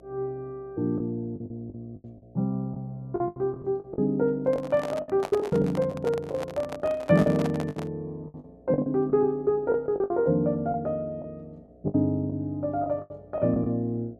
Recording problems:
electrical hum; 60 Hz, harmonics up to 720 Hz, SNR 27 dB
packet loss; 11% of the sound replaced, filled with the last packet
microphone handling noise; from 4.5 to 8 s; peak -2 dB vs average level

